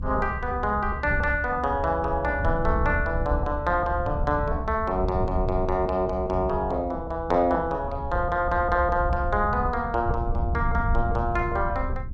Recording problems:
low-frequency rumble; below 90 Hz, SNR 6 dB

